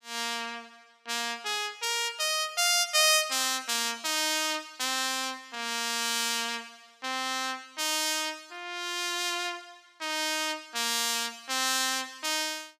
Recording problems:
none

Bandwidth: 15.5 kHz